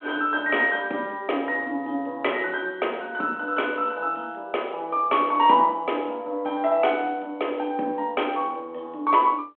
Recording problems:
telephone audio; 220 Hz to 3.4 kHz, G.726

